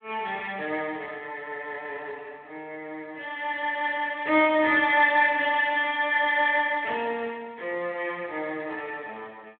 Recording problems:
telephone audio; 260 Hz to 3.5 kHz, Speex

